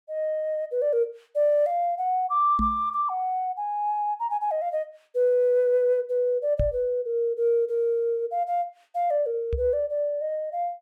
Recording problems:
knock on the microphone; at 2.5 s, at 6.5 s and at 9.5 s; peak +1 dB vs average level

